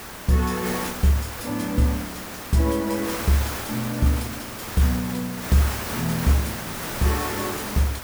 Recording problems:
background hiss; slope -4 dB per octave, SNR 6 dB

